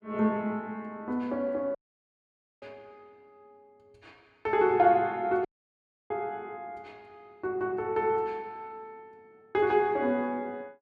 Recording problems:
audio cutting out; at 2 s for 1 s and at 5.5 s for 0.5 s

